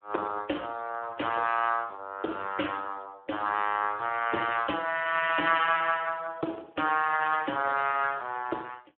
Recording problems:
phone line; 280 Hz to 3.1 kHz, Speex

